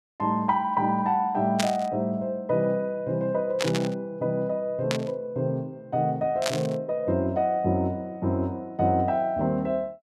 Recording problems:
static burst; 4 times, first at 1.5 s; peak +4 dB vs average level

